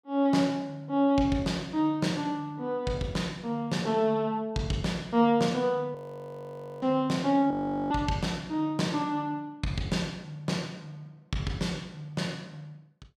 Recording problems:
audio freezing; at 6 s for 1 s and at 7.5 s

